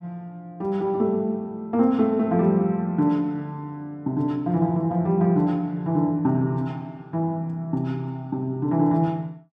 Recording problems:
none

